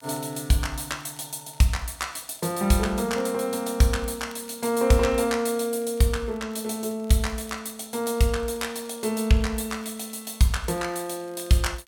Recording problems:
crackle; vinyl, SNR 28 dB

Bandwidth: 17 kHz